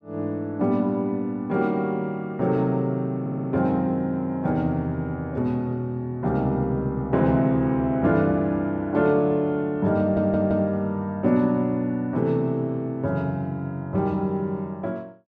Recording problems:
audio stuttering; at 3 s and at 10 s

